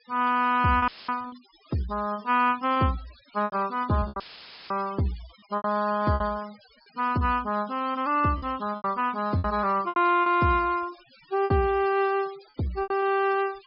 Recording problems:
treble cut off; nothing above 5.3 kHz
denoising artefacts; signal-to-artefact ratio 23 dB
lost packets; 9% of the sound replaced, filled with repeated pitch periods
dropout; at 1 s and at 4 s for 0.5 s; filled with static

